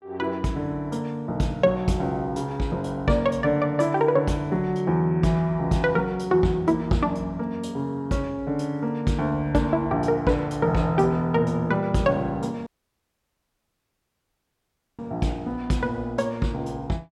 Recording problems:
dropout; at 13 s for 2.5 s

